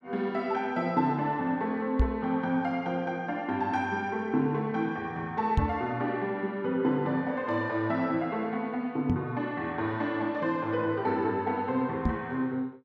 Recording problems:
microphone thump; 4 times, first at 2 s; peak +8 dB vs average level

